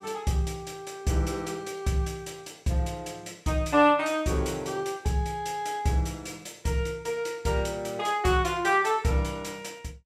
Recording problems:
none

